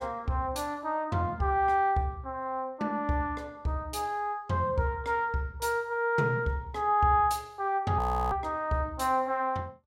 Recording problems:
audio freezing; at 8 s

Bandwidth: 16 kHz